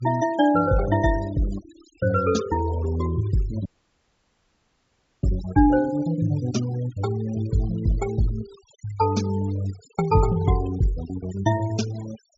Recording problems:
low-pass filter; nothing above 8 kHz
denoising artefacts; signal-to-artefact ratio 17 dB
dropout; at 3.5 s for 1.5 s

